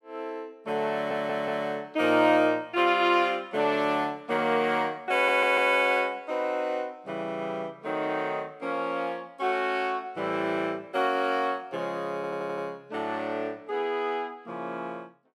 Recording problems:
stutter; at 1 s, at 5 s and at 12 s

